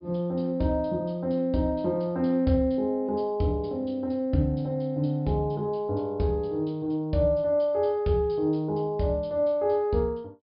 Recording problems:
treble cut off; nothing above 5.5 kHz

